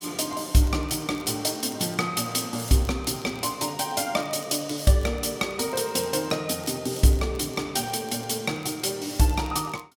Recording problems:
crackling; vinyl, SNR 24 dB

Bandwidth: 17 kHz